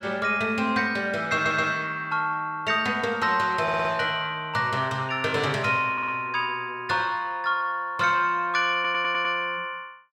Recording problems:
audio stuttering; 4 times, first at 1.5 s

